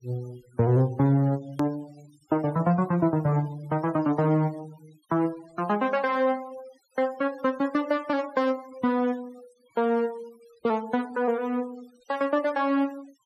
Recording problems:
denoising artefacts; signal-to-artefact ratio 22 dB
click at an edit; at 1.5 s

